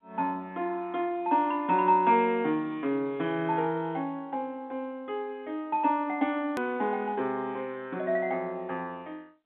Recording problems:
telephone audio; 170 Hz to 3.9 kHz, G.711
edit click; at 6.5 s

